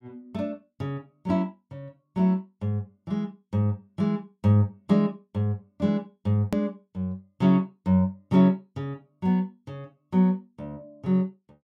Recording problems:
edit click; at 6.5 s

